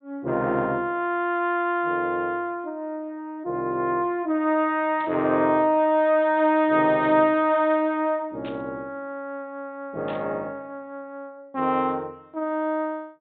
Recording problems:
low-pass filter; nothing above 4 kHz
burst of static; 4 times, first at 5 s; peak -13 dB vs average level

